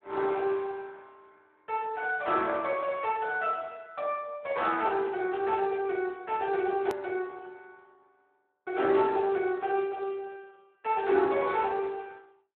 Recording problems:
phone line; 280 Hz to 3.5 kHz, Speex
hard cut with a click; at 7 s

